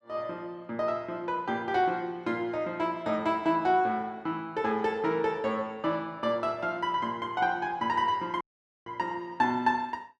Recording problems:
audio cutting out; at 8.5 s

